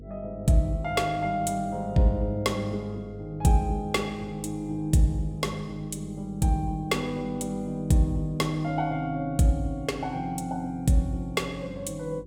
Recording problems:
hum; 50 Hz, harmonics up to 500 Hz, SNR 18 dB

